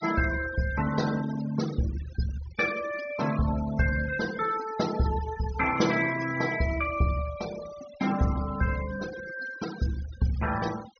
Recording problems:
low-pass filter; nothing above 6.4 kHz
denoising artefacts; signal-to-artefact ratio 13 dB

